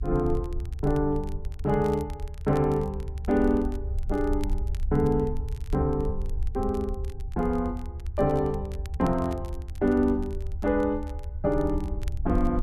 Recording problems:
low-frequency rumble; below 72 Hz, SNR 7 dB
crackle; vinyl, SNR 27 dB

